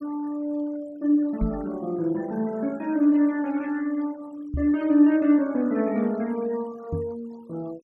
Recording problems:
noise reduction artefacts; signal-to-artefact ratio 25 dB
microphone thump; at 1.5 s, at 4.5 s and at 7 s; peak 0 dB vs average level

